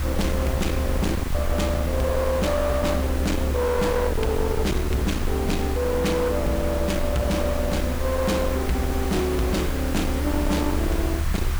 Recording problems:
distortion; hard clipping, signal-to-distortion ratio 7 dB
hiss; SNR 11 dB
rumble; below 110 Hz, strongest tone 70 Hz, SNR 3 dB

